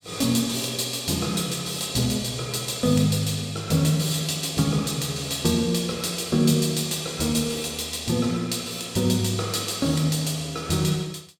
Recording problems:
none

